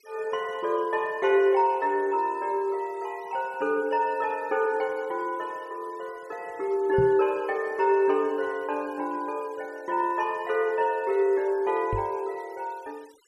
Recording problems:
noise reduction artefacts; signal-to-artefact ratio 28 dB
microphone thump; at 7 s and at 12 s; peak 0 dB vs average level

